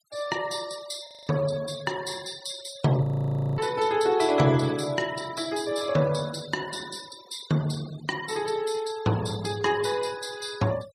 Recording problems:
denoising artefacts; signal-to-artefact ratio 17 dB
audio freezing; at 1 s and at 3 s for 0.5 s

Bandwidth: 15.5 kHz